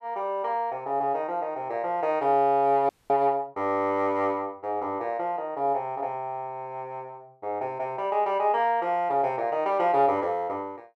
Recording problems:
frozen audio; at 3 s

